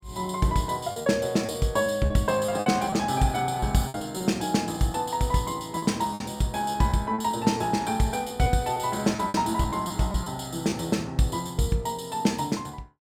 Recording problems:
lost packets; 7% of the sound replaced, filled with repeated pitch periods

